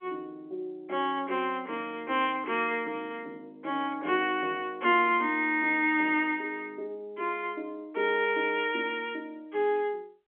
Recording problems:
phone line; 260 Hz to 3.3 kHz, G.711

